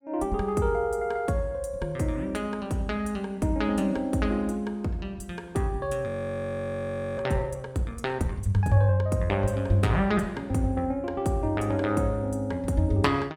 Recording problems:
frozen audio; at 6 s for 1 s

